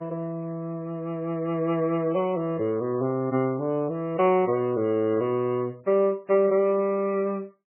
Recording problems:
lossy compression; MP3, log-spectral distance 2 dB, nothing above 2.6 kHz

